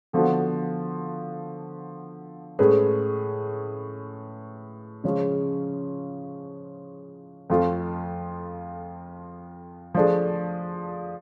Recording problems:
none

